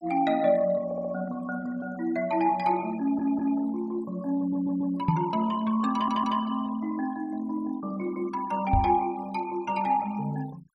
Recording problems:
denoising artefacts; signal-to-artefact ratio 21 dB
audio stuttering; 4 times, first at 1 s
microphone thump; at 5 s and at 8.5 s; peak +7 dB vs average level

